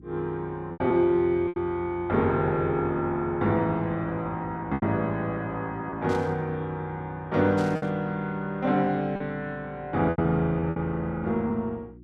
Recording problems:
hum; 60 Hz, harmonics up to 360 Hz, SNR 23 dB
packet loss; 5% of the sound replaced, filled with repeated pitch periods
static burst; at 6 s and at 7.5 s; peak -12 dB vs average level

